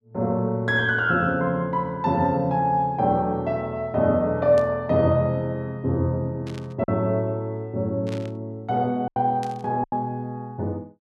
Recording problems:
lost packets; 1.9% of the sound replaced, filled with silence
burst of static; 4 times, first at 4.5 s; peak -12 dB vs average level

